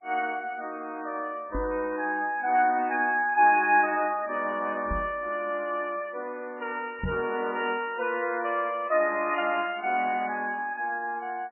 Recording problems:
lossy codec; MP3, log-spectral distance 2 dB, nothing above 2.5 kHz
microphone bump; at 1.5 s, at 5 s and at 7 s; peak -1 dB vs average level

